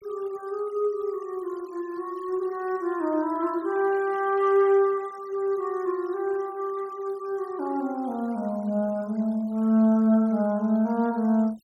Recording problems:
denoising artefacts; signal-to-artefact ratio 28 dB

